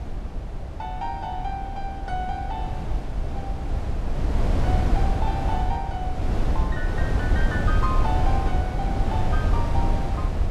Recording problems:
wind on the microphone; below 100 Hz, SNR -6 dB

